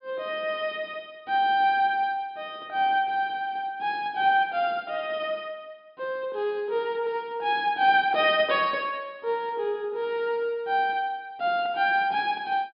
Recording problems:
treble missing; nothing above 5.5 kHz

